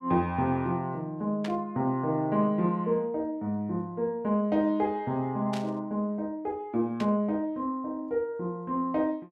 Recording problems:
static burst; at 1.5 s, at 5.5 s and at 7 s; peak -6 dB vs average level

